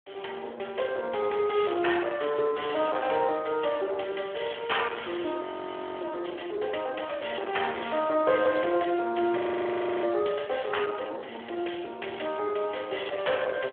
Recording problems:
phone line; 280 Hz to 3.4 kHz, Speex
distortion; soft clipping, signal-to-distortion ratio 12 dB
frozen audio; at 5.5 s for 0.5 s and at 9.5 s for 0.5 s

